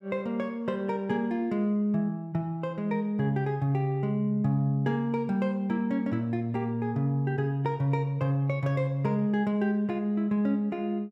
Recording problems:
none

